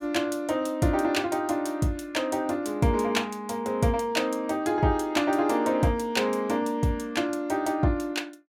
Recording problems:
none

